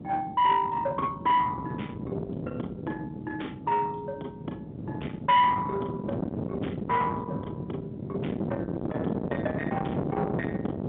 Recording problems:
phone line; 220 Hz to 3.6 kHz, G.711
distortion; soft clipping, signal-to-distortion ratio 12 dB
wind on the microphone; below 780 Hz, SNR 5 dB

